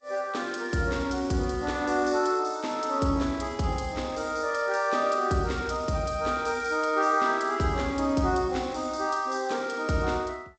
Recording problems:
lossy codec; Vorbis, then G.722, log-spectral distance 4 dB, nothing above 8 kHz

